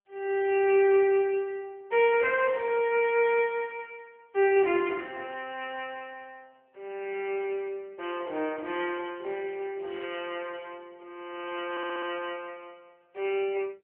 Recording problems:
telephone audio; 280 Hz to 3.2 kHz, AMR-NB
stutter; at 12 s

